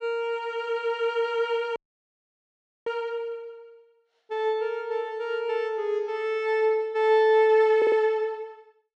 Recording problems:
audio cutting out; at 2 s for 1 s
stutter; at 8 s

